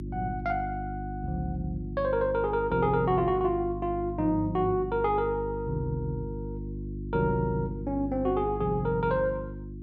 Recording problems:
hum; 50 Hz, harmonics up to 350 Hz, SNR 8 dB

